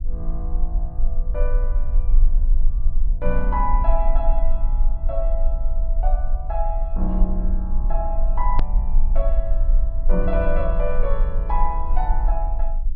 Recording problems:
treble cut off; nothing above 5.5 kHz
rumble; below 38 Hz, strongest tone 20 Hz, SNR -5 dB
click at an edit; at 8.5 s

